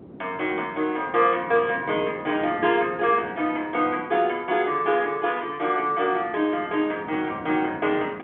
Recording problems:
phone line; 220 Hz to 3.3 kHz, G.711
wind noise; below 420 Hz, SNR 17 dB

